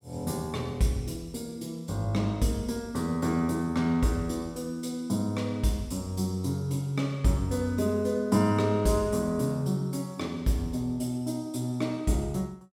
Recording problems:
none

